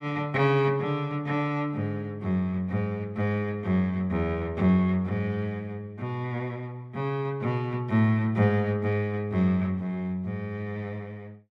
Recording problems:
none

